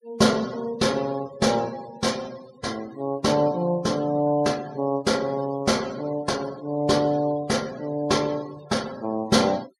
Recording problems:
noise reduction artefacts; signal-to-artefact ratio 20 dB

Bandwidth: 16 kHz